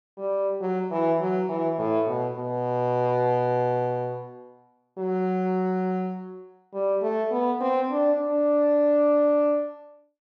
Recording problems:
none

